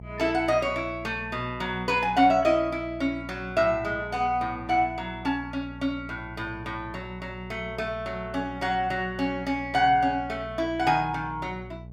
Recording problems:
hum; 60 Hz, harmonics up to 660 Hz, SNR 16 dB

